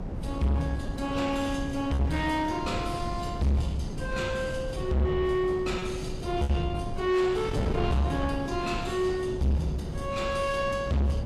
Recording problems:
codec artefacts; Vorbis, log-spectral distance 2 dB, nothing above 12.7 kHz
distortion; soft clipping, signal-to-distortion ratio 6 dB
electrical hum; 50 Hz, harmonics up to 550 Hz, SNR 23 dB
wind noise; below 270 Hz, SNR 7 dB
packet loss; 2% of the sound replaced, filled with repeated pitch periods

